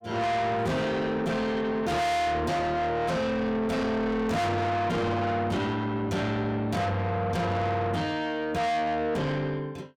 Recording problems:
distortion; soft clipping, signal-to-distortion ratio 6 dB

